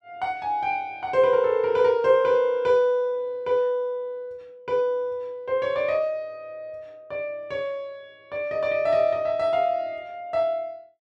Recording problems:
none

